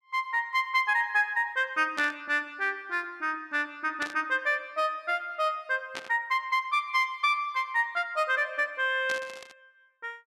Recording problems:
static burst; 4 times, first at 2 s; peak -5 dB vs average level

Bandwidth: 13 kHz